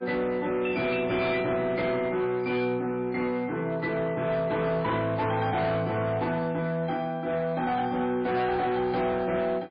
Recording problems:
lossy compression; MP3, log-spectral distance 2 dB, nothing above 4.5 kHz
distorted audio; hard clipping, signal-to-distortion ratio 11 dB

